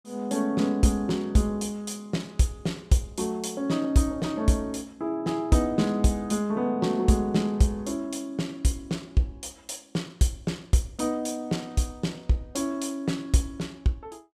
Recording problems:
none

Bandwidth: 14.5 kHz